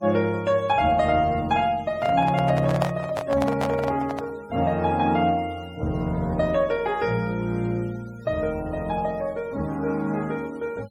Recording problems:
denoising artefacts; signal-to-artefact ratio 25 dB
handling noise; from 2 to 4.5 s; peak +2 dB vs average level

